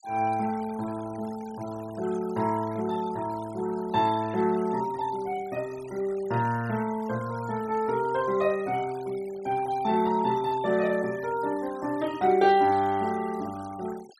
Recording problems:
noise reduction artefacts; signal-to-artefact ratio 20 dB

